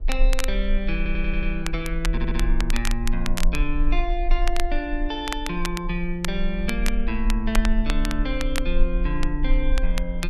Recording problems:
rumble; below 36 Hz, SNR 0 dB
wind noise; below 400 Hz, SNR 21 dB
crackle; vinyl, SNR 6 dB
stutter; at 1 s and at 2 s

